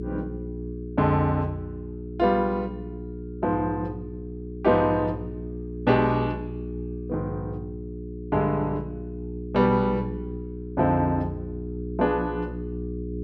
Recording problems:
electrical hum; 60 Hz, harmonics up to 420 Hz, SNR 9 dB

